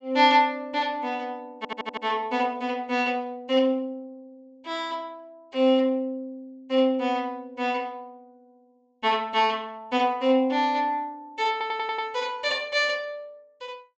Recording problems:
treble cut off; nothing above 8 kHz
stutter; at 1.5 s and at 12 s

